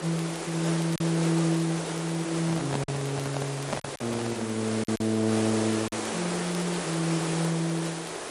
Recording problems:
lossy compression; MP3, log-spectral distance 12 dB
hiss; slope -5 dB per octave, SNR 4 dB
crackling; vinyl, SNR 22 dB
lost packets; 3% of the sound replaced, filled with silence
handling noise; from 2.5 to 4.5 s; peak +3 dB vs average level

